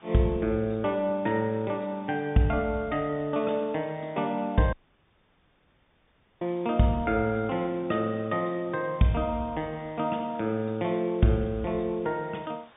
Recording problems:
low-pass filter; nothing above 3.7 kHz
hiss; SNR 27 dB
audio cutting out; at 4.5 s for 1.5 s

